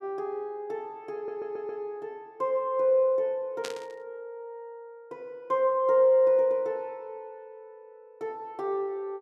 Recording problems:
audio stuttering; at 1 s
burst of static; at 3.5 s; peak -5 dB vs average level

